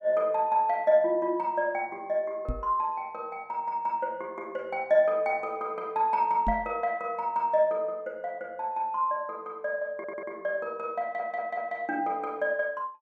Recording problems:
microphone thump; at 2.5 s and at 6.5 s; peak 0 dB vs average level
audio stuttering; at 10 s and at 11 s

